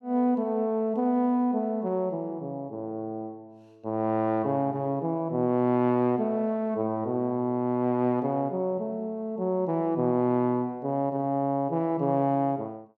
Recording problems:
none

